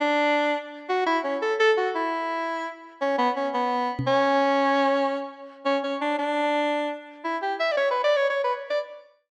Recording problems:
knock on the microphone; at 4 s; peak -1 dB vs average level

